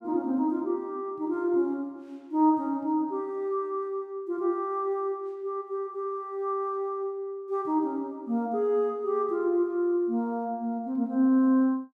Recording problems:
none

